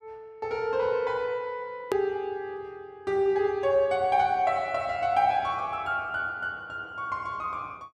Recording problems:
click at an edit; at 2 s

